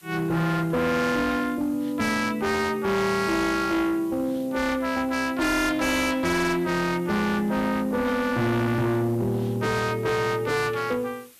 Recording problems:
distortion; hard clipping, signal-to-distortion ratio 6 dB
background hiss; slope +1 dB per octave, SNR 26 dB

